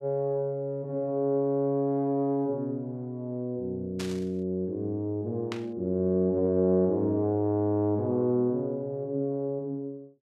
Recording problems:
static burst; at 4 s and at 5.5 s; peak -5 dB vs average level

